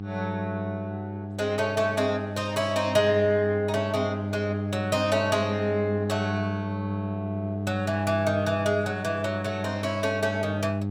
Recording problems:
hum; 50 Hz, harmonics up to 800 Hz, SNR 4 dB

